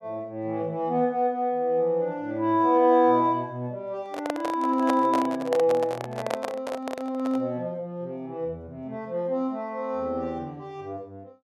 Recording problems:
microphone handling noise; from 4 to 7.5 s; peak +2 dB vs average level

